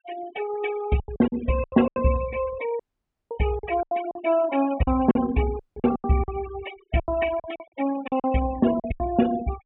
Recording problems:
low-pass filter; nothing above 3.2 kHz
noise reduction artefacts; signal-to-artefact ratio 13 dB
lost packets; 13% of the sound replaced, filled with silence
dropout; at 3 s for 0.5 s and at 5.5 s

